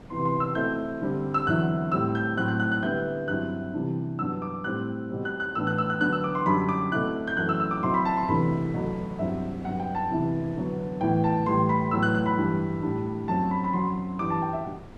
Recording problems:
wind noise; below 500 Hz, SNR 20 dB

